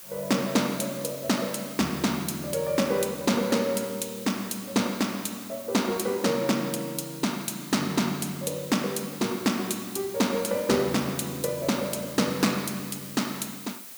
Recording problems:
background hiss; slope 0 dB per octave, SNR 13 dB

